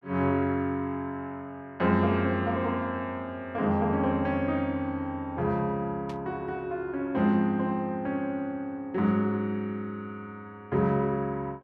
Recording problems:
static burst; at 6 s; peak -13 dB vs average level

